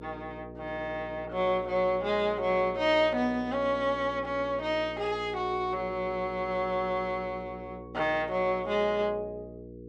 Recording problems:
hum; 60 Hz, harmonics up to 480 Hz, SNR 15 dB

